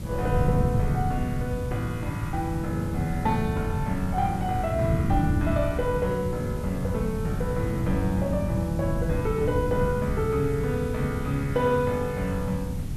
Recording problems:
background hiss; slope -2 dB per octave, SNR 19 dB
wind on the microphone; below 170 Hz, SNR 1 dB

